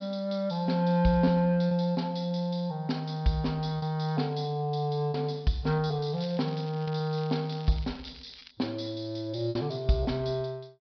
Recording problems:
treble missing; nothing above 5.5 kHz
packet loss; 3% of the sound replaced, filled with repeated pitch periods
crackling; from 6 to 8.5 s; loose cable, SNR 21 dB

